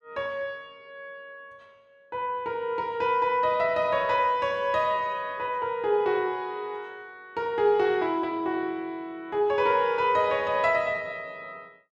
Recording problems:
none

